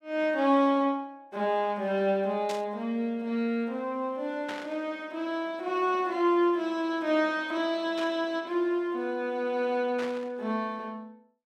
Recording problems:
burst of static; 4 times, first at 2.5 s; peak -6 dB vs average level

